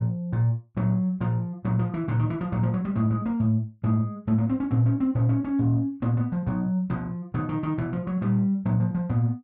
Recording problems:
none

